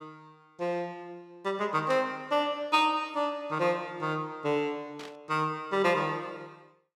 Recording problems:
burst of static; at 2 s and at 5 s; peak -9 dB vs average level

